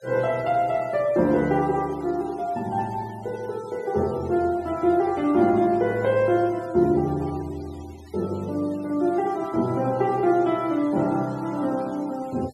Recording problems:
noise reduction artefacts; signal-to-artefact ratio 24 dB

